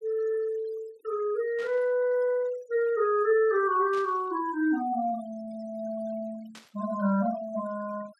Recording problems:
noise reduction artefacts; signal-to-artefact ratio 22 dB
static burst; at 1.5 s, at 4 s and at 6.5 s; peak -14 dB vs average level

